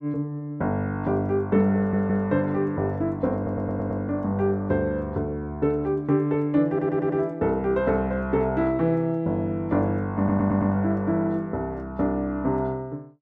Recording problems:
stutter; 4 times, first at 2 s

